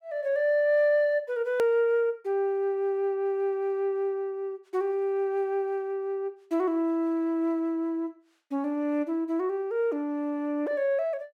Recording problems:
hard cut with a click; at 1.5 s

